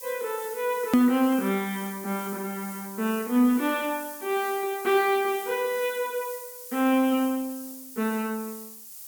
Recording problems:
background hiss; SNR 13 dB
hard cut with a click; at 1 s

